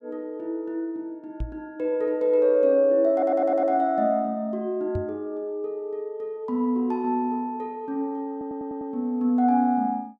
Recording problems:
microphone thump; at 1.5 s and at 5 s; peak -2 dB vs average level
stutter; at 3 s and at 8.5 s

